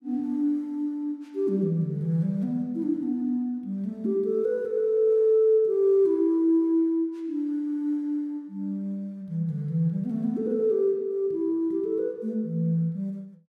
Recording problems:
none

